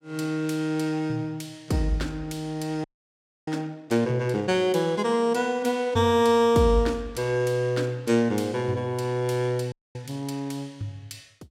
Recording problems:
frozen audio; at 3 s for 0.5 s and at 9.5 s

